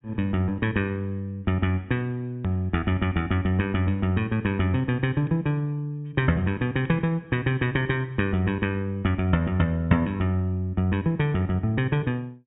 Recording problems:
treble missing; nothing above 4 kHz
hard cut with a click; at 2.5 s

